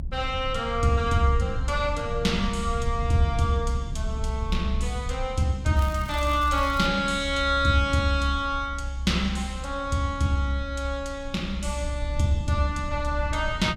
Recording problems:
low-frequency rumble; below 68 Hz, SNR 6 dB
crackling; from 6 to 7 s; loose cable, SNR 19 dB

